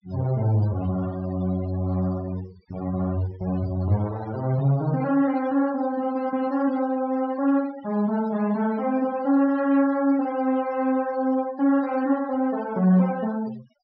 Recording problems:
treble cut off; nothing above 5.5 kHz
noise reduction artefacts; signal-to-artefact ratio 17 dB

